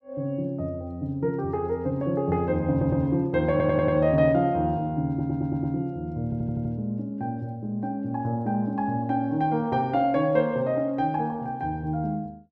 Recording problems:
stutter; 4 times, first at 2.5 s

